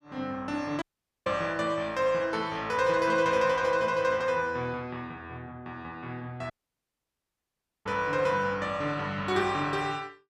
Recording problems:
audio cutting out; at 1 s and at 6.5 s for 1.5 s

